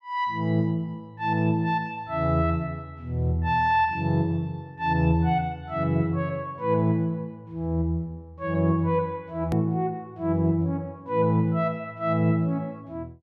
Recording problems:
click at an edit; at 9.5 s

